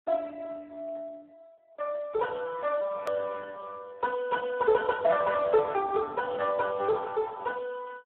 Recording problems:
telephone audio; 320 Hz to 2 kHz, Speex
hard cut with a click; at 3 s

